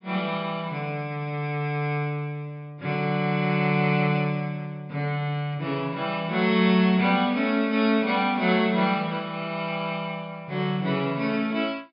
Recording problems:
treble cut off; nothing above 5.5 kHz

